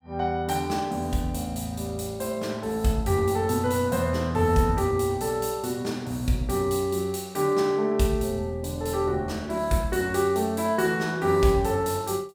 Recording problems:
none

